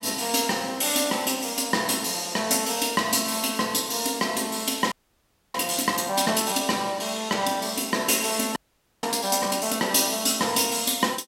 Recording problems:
audio freezing; at 5 s for 0.5 s and at 8.5 s

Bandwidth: 16 kHz